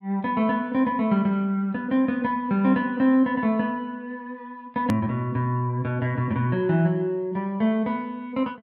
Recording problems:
click at an edit; at 5 s

